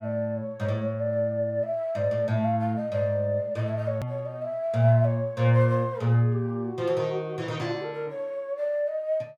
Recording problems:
hard cut with a click; at 4 s

